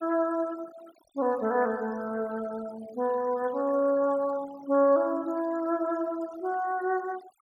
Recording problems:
noise reduction artefacts; signal-to-artefact ratio 22 dB

